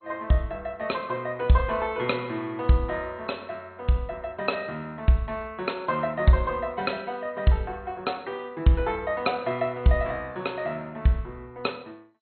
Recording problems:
lossy codec; MP2, log-spectral distance 3 dB, nothing above 4.2 kHz

